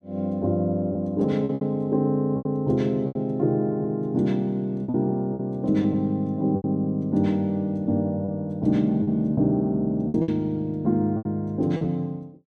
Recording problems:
packet loss; 7% of the sound replaced, filled with repeated pitch periods

